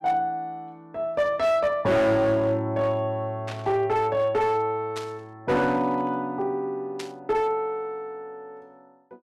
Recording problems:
distortion; hard clipping, signal-to-distortion ratio 10 dB
static burst; at 3.5 s, at 5 s and at 7 s; peak -7 dB vs average level

